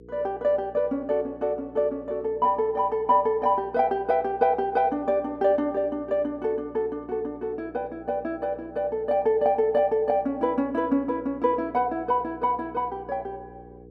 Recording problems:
hum; 60 Hz, harmonics up to 480 Hz, SNR 22 dB

